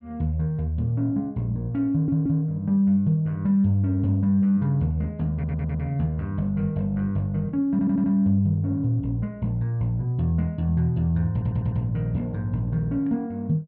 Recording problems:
stutter; 4 times, first at 2 s

